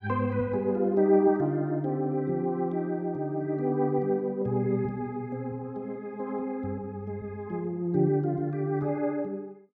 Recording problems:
none

